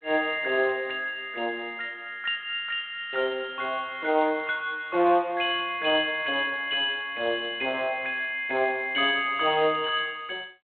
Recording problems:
telephone audio; 240 Hz to 3.8 kHz, G.726

